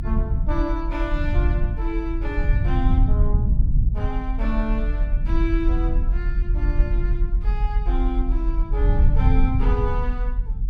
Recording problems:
low-frequency rumble; below 64 Hz, SNR -7 dB

